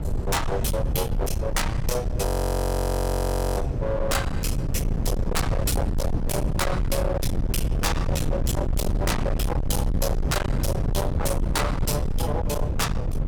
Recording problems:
distorted audio; hard clipping, signal-to-distortion ratio 6 dB
low-frequency rumble; below 180 Hz, SNR -1 dB
audio freezing; at 2.5 s for 1.5 s

